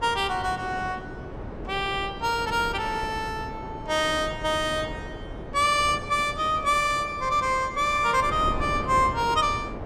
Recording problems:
wind on the microphone; below 520 Hz, SNR 12 dB

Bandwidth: 14.5 kHz